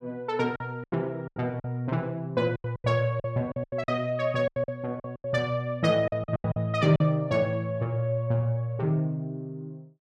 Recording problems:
packet loss; 11% of the sound replaced, filled with silence

